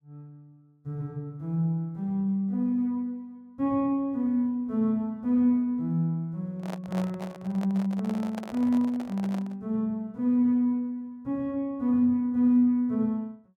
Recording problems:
handling noise; from 6.5 to 9.5 s; peak -6 dB vs average level

